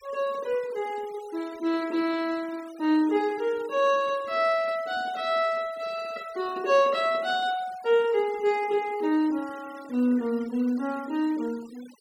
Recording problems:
denoising artefacts; signal-to-artefact ratio 22 dB

